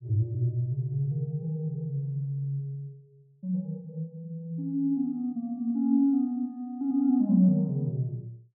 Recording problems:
none

